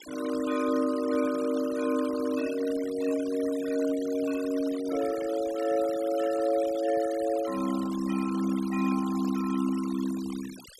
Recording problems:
noise reduction artefacts; signal-to-artefact ratio 15 dB

